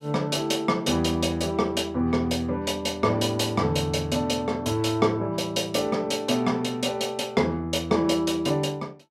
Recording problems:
none

